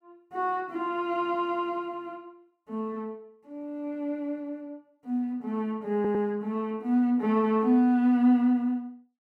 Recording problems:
audio stuttering; at 6 s

